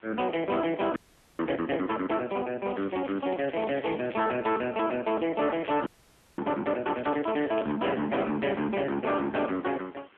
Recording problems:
telephone audio; 150 Hz to 3.3 kHz, AMR-NB
distortion; soft clipping, signal-to-distortion ratio 12 dB
background hiss; SNR 30 dB
frozen audio; at 1 s and at 6 s for 0.5 s
crackling; from 2.5 to 4.5 s, at 5.5 s and at 7 s; loose cable, SNR 19 dB

